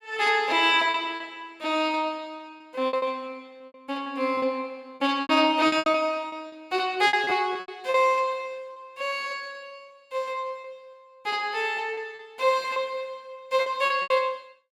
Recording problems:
packet loss; 10% of the sound replaced, filled with repeated pitch periods

